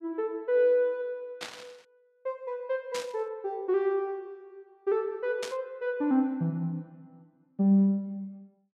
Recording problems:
static burst; at 1.5 s, at 3 s and at 5.5 s; peak -4 dB vs average level

